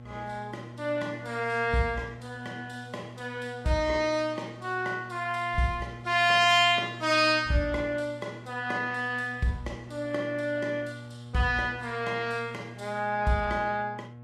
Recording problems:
codec artefacts; Vorbis, log-spectral distance 3 dB, nothing above 12.3 kHz
hum; 60 Hz, harmonics up to 1.3 kHz, SNR 16 dB

